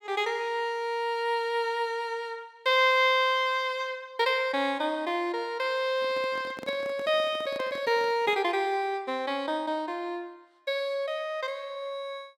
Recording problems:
handling noise; from 6 to 8.5 s; peak -9 dB vs average level

